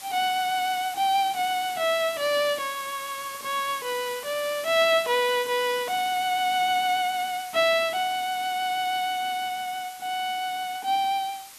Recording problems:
background hiss; slope +2 dB per octave, SNR 15 dB

